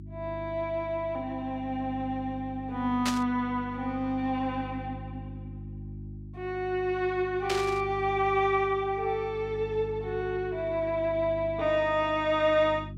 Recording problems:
hum; 50 Hz, harmonics up to 350 Hz, SNR 13 dB
static burst; at 3 s and at 7.5 s; peak +2 dB vs average level

